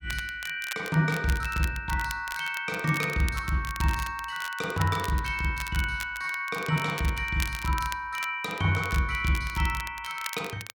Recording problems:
crackle; vinyl, SNR 12 dB

